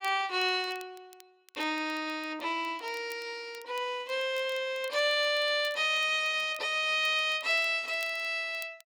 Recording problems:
crackle; vinyl, SNR 25 dB

